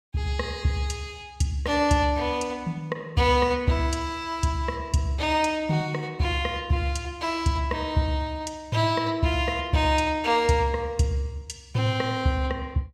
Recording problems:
none

